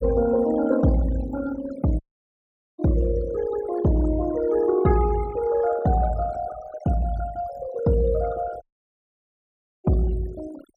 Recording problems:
noise reduction artefacts; signal-to-artefact ratio 16 dB
audio cutting out; at 2 s for 1 s and at 8.5 s for 1 s

